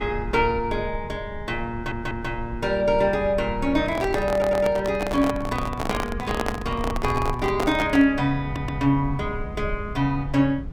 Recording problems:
rumble; below 94 Hz, SNR 12 dB
stutter; at 1.5 s, at 4.5 s and at 8.5 s
microphone handling noise; from 4 to 8 s; peak +2 dB vs average level

